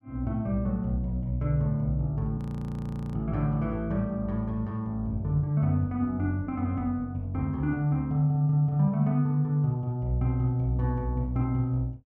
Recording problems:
frozen audio; at 2.5 s for 1 s

